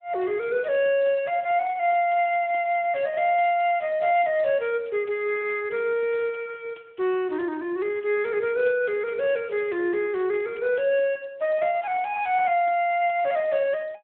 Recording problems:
phone line; 170 Hz to 3.4 kHz, Speex

